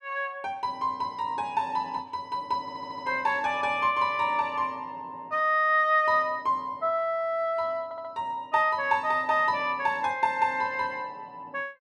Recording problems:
audio stuttering; at 2.5 s and at 8 s

